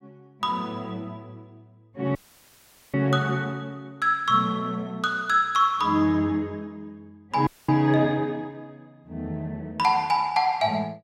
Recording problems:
audio cutting out; at 2 s for 1 s and at 7.5 s

